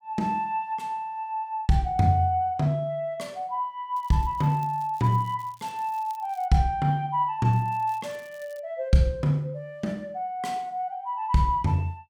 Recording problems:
crackling; from 4 to 6.5 s and from 7.5 to 8.5 s; loose cable, SNR 28 dB

